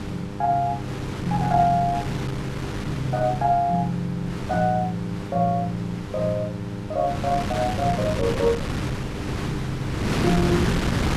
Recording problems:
hum; 50 Hz, harmonics up to 1.5 kHz, SNR 11 dB
wind on the microphone; below 1 kHz, SNR 5 dB

